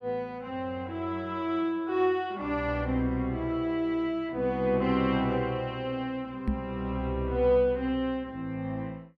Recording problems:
microphone thump; at 6.5 s; peak +5 dB vs average level

